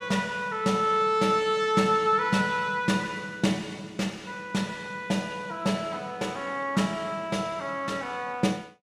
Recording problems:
none

